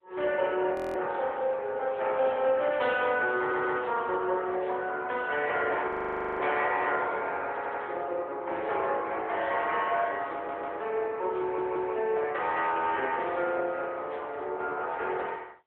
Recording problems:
telephone audio; 320 Hz to 3.5 kHz, AMR-NB
audio freezing; at 1 s and at 6 s for 0.5 s
audio stuttering; 4 times, first at 3.5 s

